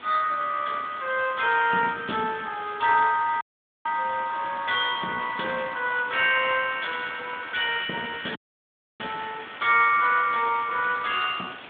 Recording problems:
telephone audio; 190 Hz to 3.6 kHz, Speex
background hiss; SNR 17 dB
audio cutting out; at 3.5 s and at 8.5 s for 0.5 s

